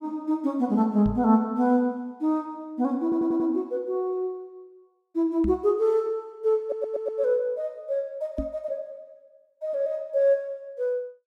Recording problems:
knock on the microphone; at 1 s, at 5.5 s and at 8.5 s; peak -1 dB vs average level
audio stuttering; at 3 s and at 6.5 s

